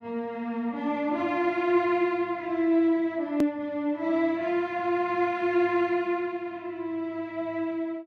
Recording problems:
edit click; at 3.5 s

